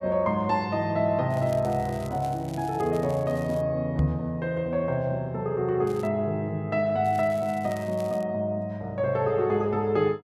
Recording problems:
crackling; from 1.5 to 3.5 s, at 6 s and from 7 to 8 s; loose cable, SNR 24 dB
knock on the microphone; at 4 s; peak +7 dB vs average level

